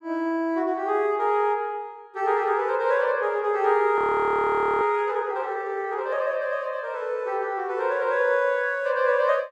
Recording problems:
audio freezing; at 4 s for 1 s

